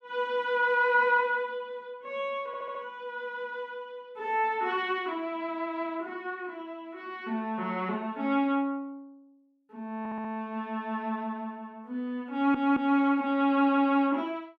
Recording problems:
stutter; at 2.5 s, at 10 s and at 12 s

